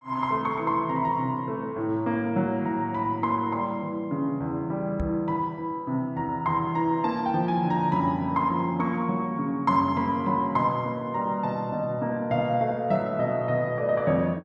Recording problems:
knock on the microphone; at 5 s; peak -1 dB vs average level

